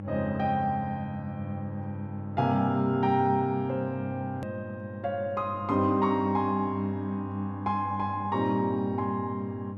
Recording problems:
electrical hum; 50 Hz, harmonics up to 800 Hz, SNR 10 dB
hard cut with a click; at 4.5 s

